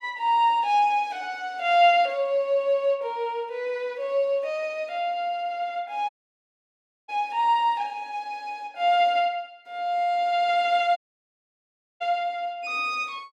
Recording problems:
audio cutting out; at 6 s for 1 s and at 11 s for 1 s

